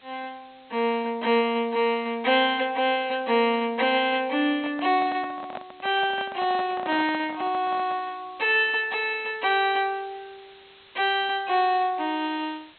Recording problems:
low-pass filter; nothing above 4.1 kHz
background hiss; SNR 27 dB
handling noise; from 4.5 to 8 s; peak -7 dB vs average level

